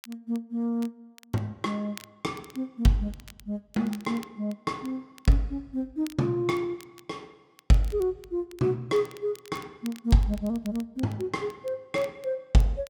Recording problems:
crackle; vinyl, SNR 23 dB

